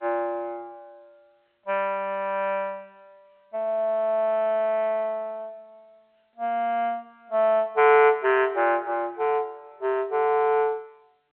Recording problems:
telephone audio; 300 Hz to 3.2 kHz, G.711

